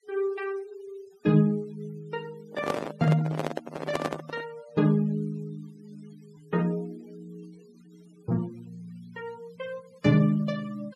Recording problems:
denoising artefacts; signal-to-artefact ratio 24 dB
microphone handling noise; from 2.5 to 4.5 s; peak +3 dB vs average level

